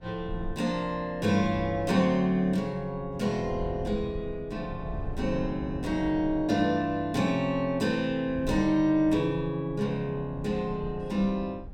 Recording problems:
rumble; below 110 Hz, SNR 15 dB

